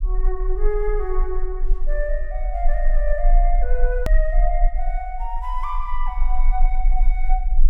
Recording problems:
low-frequency rumble; below 34 Hz, strongest tone 24 Hz, SNR -5 dB
edit click; at 4 s

